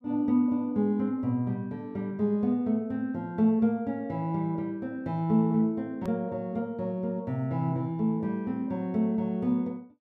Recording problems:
click at an edit; at 6 s

